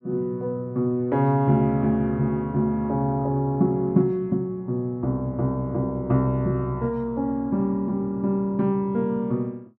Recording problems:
none

